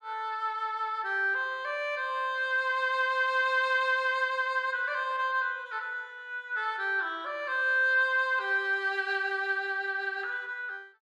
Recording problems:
none

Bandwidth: 13 kHz